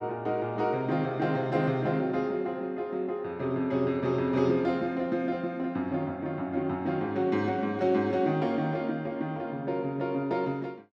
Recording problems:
none

